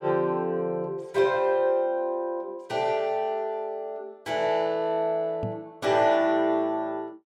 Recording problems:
microphone bump; at 5.5 s; peak -3 dB vs average level

